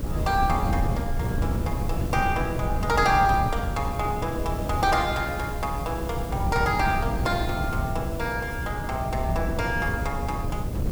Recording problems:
mains hum; 60 Hz, harmonics up to 600 Hz, SNR 10 dB
background hiss; slope 0 dB per octave, SNR 18 dB
wind noise; below 170 Hz, SNR 3 dB

